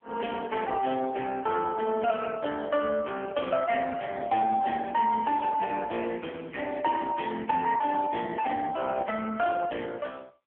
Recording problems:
telephone audio; 340 Hz to 3.1 kHz, AMR-NB

